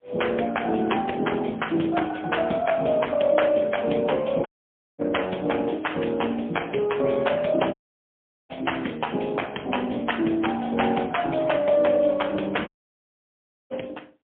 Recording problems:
phone line; 190 Hz to 3.3 kHz, AMR-NB, then MP3
audio cutting out; at 4.5 s for 0.5 s, at 7.5 s for 1 s and at 13 s for 1 s

